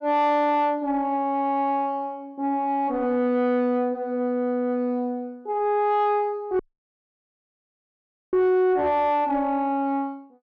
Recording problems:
distortion; soft clipping, signal-to-distortion ratio 10 dB
dropout; at 6.5 s for 1.5 s

